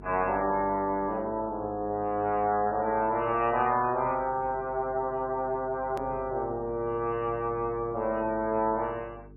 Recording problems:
codec artefacts; MP3, then AAC, log-spectral distance 2 dB, nothing above 2.7 kHz
electrical hum; 50 Hz, harmonics up to 450 Hz, SNR 20 dB
click at an edit; at 6 s

